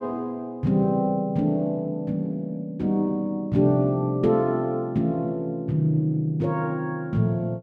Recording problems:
none

